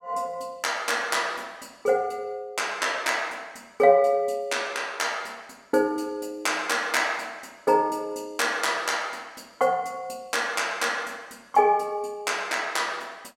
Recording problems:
none

